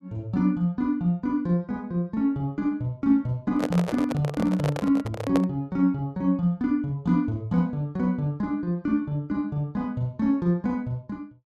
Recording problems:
microphone handling noise; from 3.5 to 5.5 s; peak +1 dB vs average level

